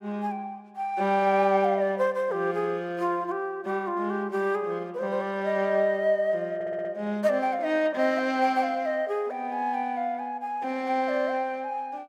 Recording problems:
audio stuttering; at 6.5 s

